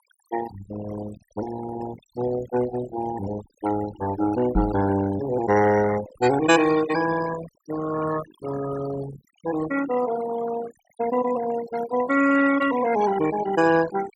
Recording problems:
denoising artefacts; signal-to-artefact ratio 11 dB
microphone thump; at 4.5 s; peak +3 dB vs average level

